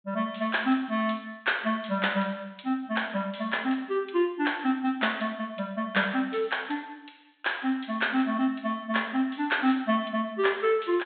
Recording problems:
treble cut off; nothing above 4 kHz

